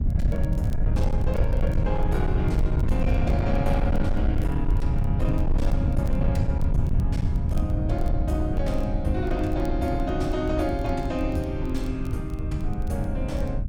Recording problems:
distortion; hard clipping, signal-to-distortion ratio 10 dB
rumble; below 110 Hz, SNR -3 dB
crackling; vinyl, SNR 27 dB

